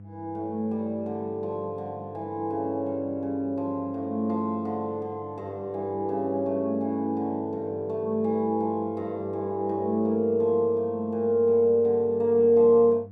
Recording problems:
electrical hum; 50 Hz, harmonics up to 500 Hz, SNR 19 dB

